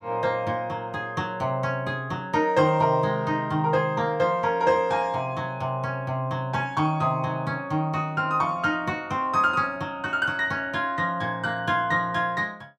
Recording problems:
none

